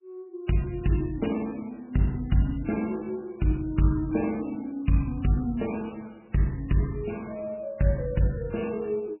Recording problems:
lossy codec; MP3, log-spectral distance 4 dB, nothing above 2.9 kHz

